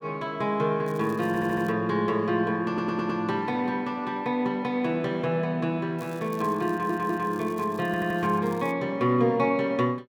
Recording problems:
crackling; at 1 s and from 6 to 8.5 s; loose cable, SNR 25 dB
audio stuttering; 4 times, first at 1.5 s

